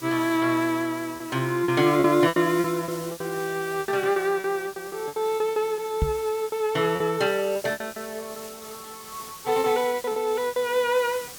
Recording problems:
hiss; slope -1 dB per octave, SNR 16 dB
packet loss; 13% of the sound replaced, filled with repeated pitch periods
microphone thump; at 6 s; peak +3 dB vs average level

